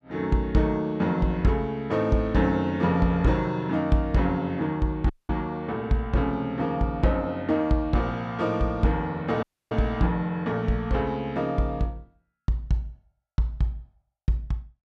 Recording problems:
audio cutting out; at 5 s and at 9.5 s

